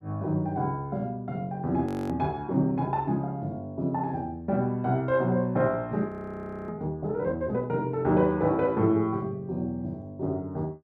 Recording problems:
audio freezing; at 2 s and at 6 s for 0.5 s

